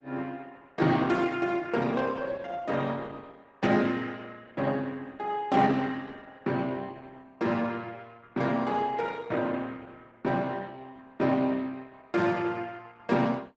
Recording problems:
lossy compression; Opus, log-spectral distance 3 dB, nothing above 8 kHz

